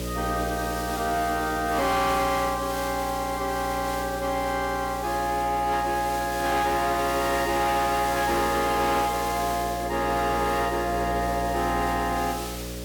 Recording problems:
distortion; soft clipping, signal-to-distortion ratio 10 dB
electrical hum; 60 Hz, harmonics up to 600 Hz, SNR 10 dB
background hiss; slope 0 dB per octave, SNR 12 dB

